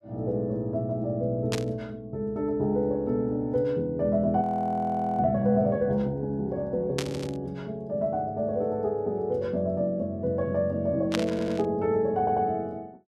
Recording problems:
static burst; at 1.5 s, at 7 s and at 11 s; peak +2 dB vs average level
audio freezing; at 4.5 s for 1 s
audio stuttering; at 7 s, at 11 s and at 12 s

